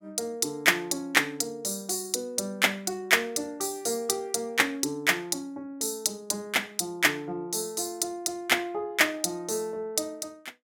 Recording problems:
none

